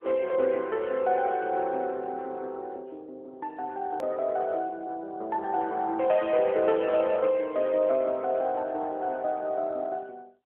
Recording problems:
telephone audio; 260 Hz to 3.1 kHz, AMR-NB
hard cut with a click; at 4 s

